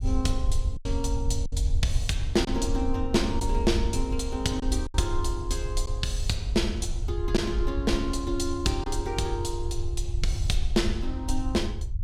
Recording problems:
rumble; below 70 Hz, SNR 2 dB
packet loss; 3% of the sound replaced, filled with silence

